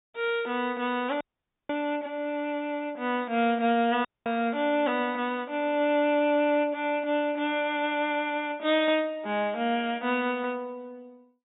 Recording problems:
treble missing; nothing above 3.7 kHz
audio cutting out; at 1 s and at 4 s

